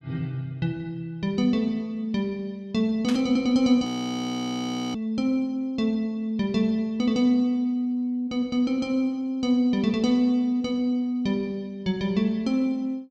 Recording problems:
burst of static; at 3 s; peak -5 dB vs average level
frozen audio; at 4 s for 1 s

